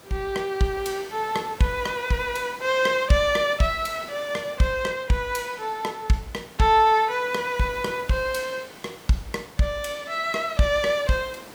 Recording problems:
hiss; slope -5 dB per octave, SNR 19 dB

